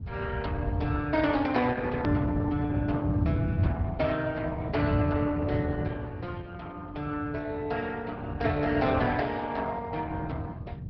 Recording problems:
treble missing; nothing above 5.2 kHz
codec artefacts; Opus, log-spectral distance 3 dB
low-frequency rumble; below 130 Hz, SNR 1 dB
hard cut with a click; at 2 s

